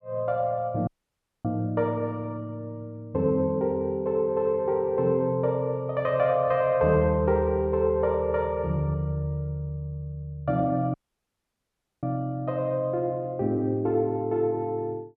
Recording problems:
dropout; at 1 s for 0.5 s and at 11 s for 1 s

